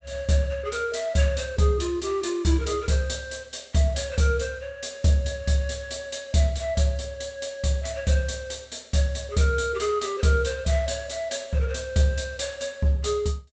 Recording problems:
treble cut off; nothing above 8 kHz

